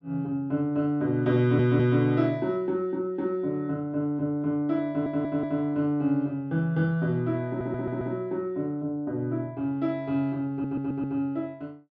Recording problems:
stutter; 4 times, first at 1.5 s

